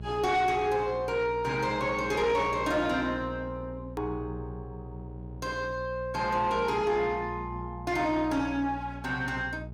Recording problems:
distortion; soft clipping, signal-to-distortion ratio 11 dB
mains hum; 60 Hz, harmonics up to 600 Hz, SNR 13 dB
hard cut with a click; at 4 s

